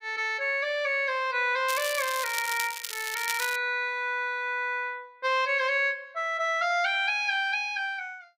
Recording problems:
crackling; at 1.5 s and at 2.5 s; loose cable, SNR 7 dB

